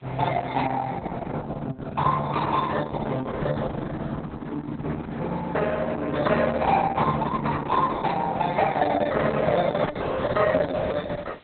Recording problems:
codec artefacts; Opus, log-spectral distance 5 dB, nothing above 3.9 kHz
hiss; SNR 30 dB

